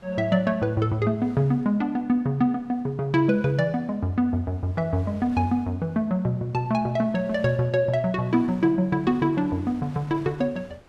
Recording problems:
wind noise; below 1.2 kHz, SNR 26 dB

